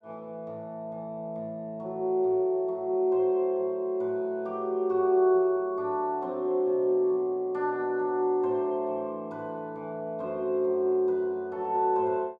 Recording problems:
none

